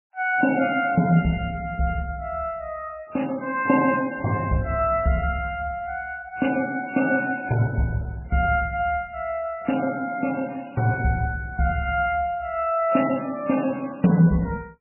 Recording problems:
lossy compression; MP3, log-spectral distance 3 dB, nothing above 2.8 kHz

